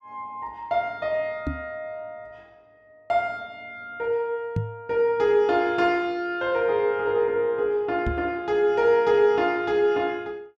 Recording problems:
microphone bump; at 1.5 s, at 4.5 s and at 8 s; peak +1 dB vs average level

